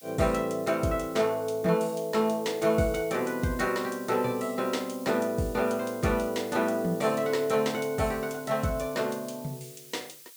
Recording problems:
background hiss; SNR 19 dB

